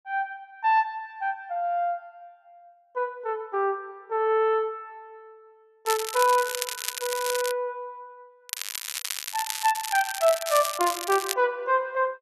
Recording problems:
crackling; from 6 to 7.5 s and from 8.5 to 11 s; loose cable, SNR 5 dB

